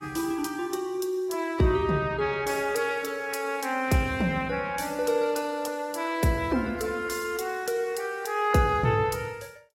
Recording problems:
lossy compression; AAC, log-spectral distance 3 dB, nothing above 16 kHz

